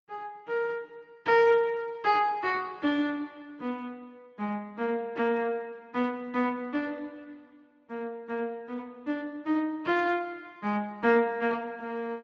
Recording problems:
lossy codec; Speex, then Opus, log-spectral distance 2 dB

